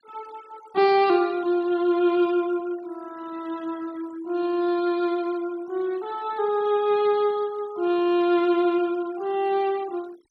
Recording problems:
noise reduction artefacts; signal-to-artefact ratio 24 dB

